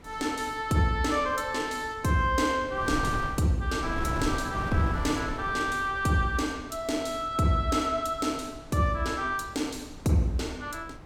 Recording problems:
wind on the microphone; below 360 Hz, SNR 12 dB

